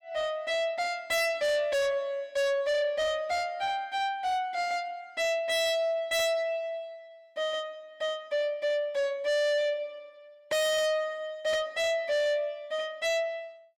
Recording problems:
distortion; soft clipping, signal-to-distortion ratio 7 dB

